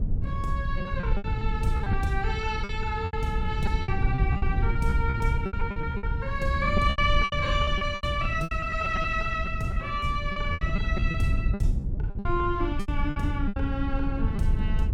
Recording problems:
low-frequency rumble; below 98 Hz, SNR 0 dB
packet loss; 14% of the sound replaced, filled with repeated pitch periods

